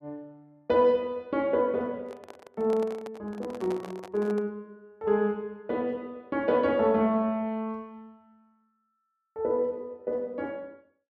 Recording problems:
handling noise; from 2 to 4.5 s; peak -7 dB vs average level

